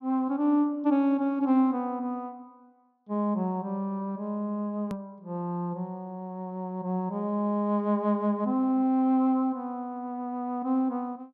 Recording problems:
treble cut off; nothing above 6.4 kHz
edit click; at 5 s

